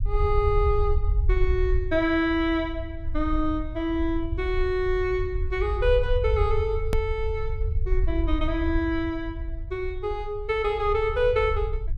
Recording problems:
rumble; below 70 Hz, SNR 4 dB
click at an edit; at 7 s

